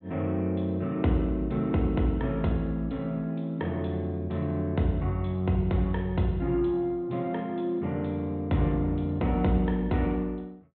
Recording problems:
treble cut off; nothing above 4 kHz

